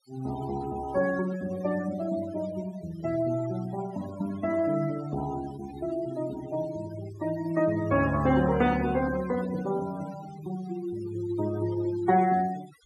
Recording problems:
denoising artefacts; signal-to-artefact ratio 16 dB

